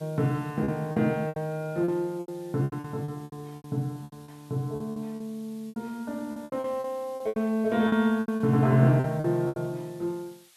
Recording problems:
background hiss; slope +3 dB per octave, SNR 27 dB
packet loss; 15% of the sound replaced, filled with repeated pitch periods

